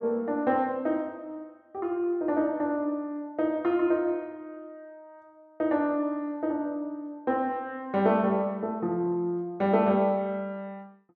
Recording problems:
none

